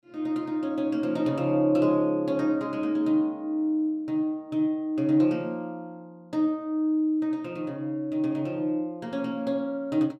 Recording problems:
none

